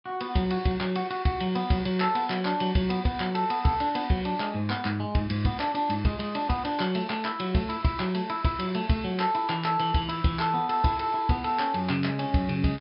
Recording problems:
treble missing; nothing above 5.5 kHz

